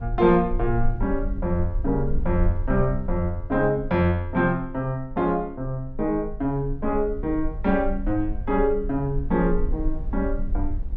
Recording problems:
low-frequency rumble; below 46 Hz, SNR 8 dB

